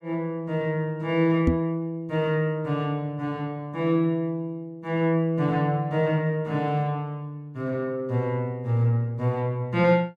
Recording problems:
microphone bump; at 1.5 s; peak +7 dB vs average level

